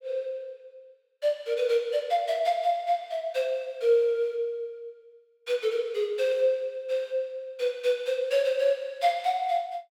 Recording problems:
none

